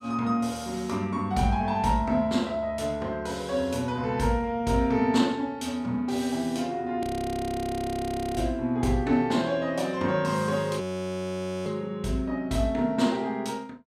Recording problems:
audio freezing; at 7 s for 1.5 s and at 11 s for 1 s

